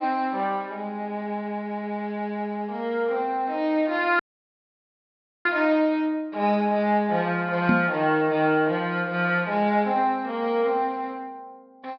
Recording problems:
treble missing; nothing above 5.5 kHz
audio cutting out; at 4 s for 1.5 s
microphone bump; at 7.5 s; peak +5 dB vs average level

